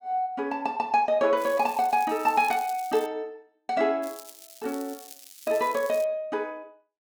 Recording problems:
crackle; from 1.5 to 3 s and from 4 to 6 s; loose cable, SNR 18 dB

